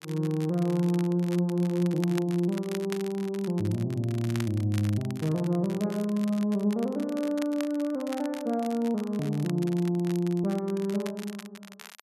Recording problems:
crackling; vinyl, SNR 17 dB

